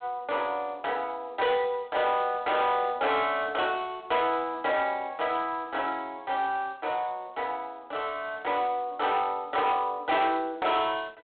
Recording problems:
phone line; 240 Hz to 3.7 kHz, G.726
distorted audio; soft clipping, signal-to-distortion ratio 11 dB

